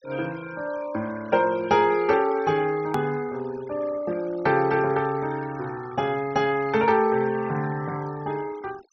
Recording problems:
low-pass filter; nothing above 6.1 kHz
noise reduction artefacts; signal-to-artefact ratio 20 dB
hard cut with a click; at 3 s

